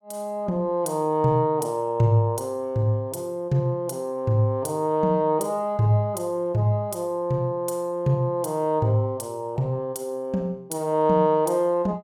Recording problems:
none

